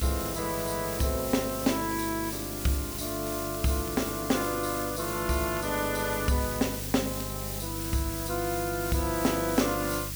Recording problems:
hum; 50 Hz, harmonics up to 450 Hz, SNR 11 dB
background hiss; SNR 5 dB
crackling; vinyl, SNR 25 dB

